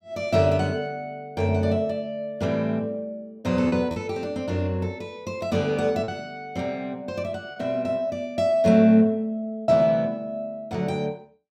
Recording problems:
packet loss; 2% of the sound replaced, filled with repeated pitch periods

